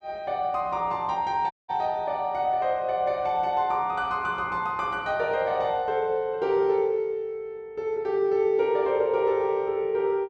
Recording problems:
dropout; at 1.5 s

